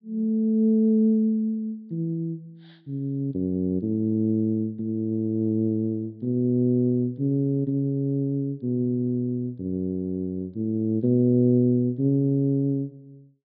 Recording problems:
low-pass filter; nothing above 5.5 kHz

